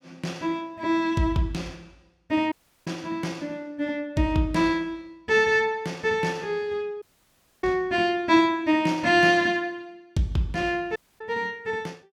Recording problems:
dropout; at 2.5 s, at 7 s for 0.5 s and at 11 s

